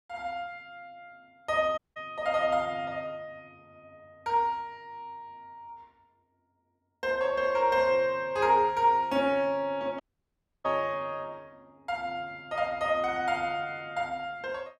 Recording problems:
audio cutting out; at 2 s and at 10 s for 0.5 s

